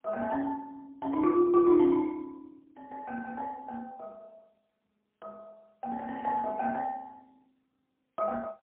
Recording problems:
telephone audio; 300 Hz to 2.2 kHz, AMR-NB, then MP3

